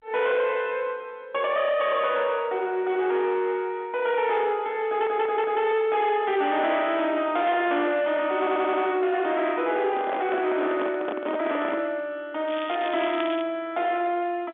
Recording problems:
phone line; 220 Hz to 3.7 kHz, G.711
distorted audio; soft clipping, signal-to-distortion ratio 11 dB
audio stuttering; at 5 s and at 8.5 s
handling noise; from 10 to 12 s; peak -2 dB vs average level
crackle; at 12 s; loose cable, SNR 14 dB

